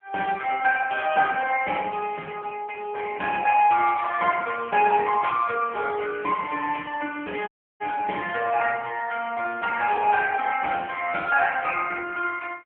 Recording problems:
telephone audio; 240 Hz to 2.9 kHz, AMR-NB
dropout; at 7.5 s

